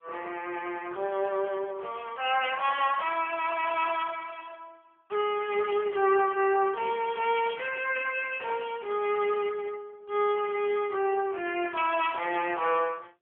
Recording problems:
telephone audio; 340 Hz to 3.2 kHz, AMR-NB

